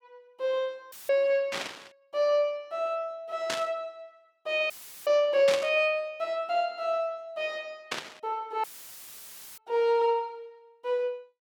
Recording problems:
audio cutting out; at 1 s, at 4.5 s and at 8.5 s for 1 s; filled with static
static burst; 4 times, first at 1.5 s; peak +1 dB vs average level

